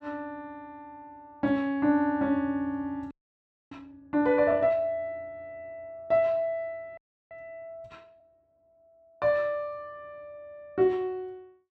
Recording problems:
audio freezing; at 3 s for 0.5 s and at 7 s

